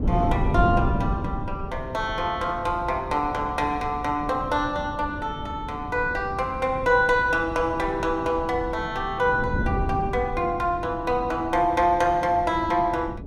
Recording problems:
wind noise; below 240 Hz, SNR 8 dB

